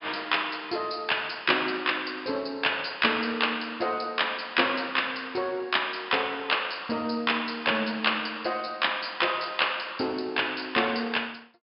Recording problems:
treble missing; nothing above 5.5 kHz

